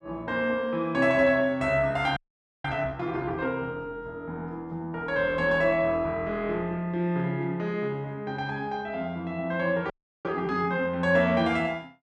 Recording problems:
audio freezing; at 2 s and at 10 s

